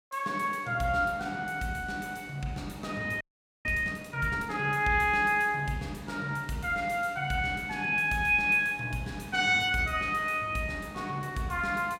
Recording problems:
frozen audio; at 3 s

